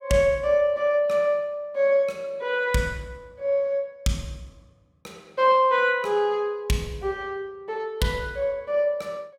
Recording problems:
none

